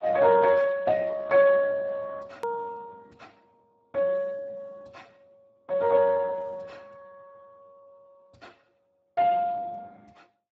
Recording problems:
lossy codec; Speex, log-spectral distance 3 dB
hard cut with a click; at 2.5 s

